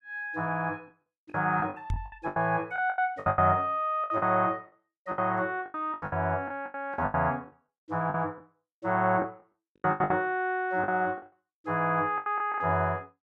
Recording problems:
lost packets; 15% of the sound replaced, filled with the last packet
knock on the microphone; at 2 s; peak 0 dB vs average level

